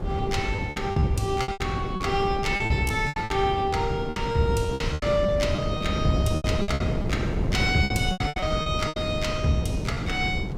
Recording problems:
wind on the microphone; below 260 Hz, SNR 3 dB
lost packets; 15% of the sound replaced, filled with repeated pitch periods

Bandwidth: 16 kHz